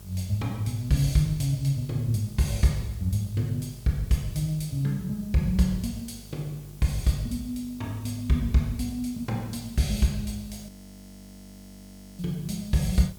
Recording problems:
hum; 50 Hz, harmonics up to 650 Hz, SNR 20 dB
background hiss; slope +2 dB per octave, SNR 24 dB
audio freezing; at 11 s for 1.5 s

